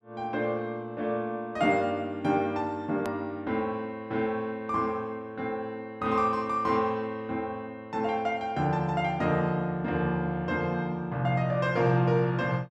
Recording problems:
edit click; at 3 s

